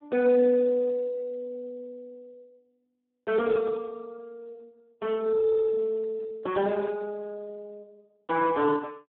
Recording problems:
phone line; 260 Hz to 2.1 kHz, Speex

